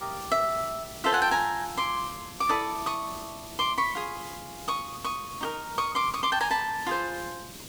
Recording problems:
background hiss; SNR 13 dB

